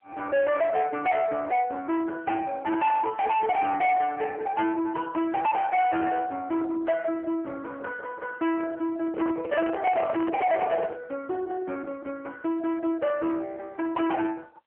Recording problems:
phone line; 340 Hz to 2.3 kHz, AMR-NB
distorted audio; soft clipping, signal-to-distortion ratio 7 dB
handling noise; from 9 to 11 s; peak 0 dB vs average level

